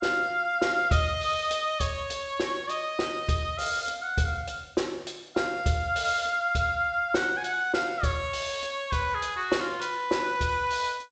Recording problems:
lossy codec; G.722, log-spectral distance 3 dB, nothing above 7.6 kHz

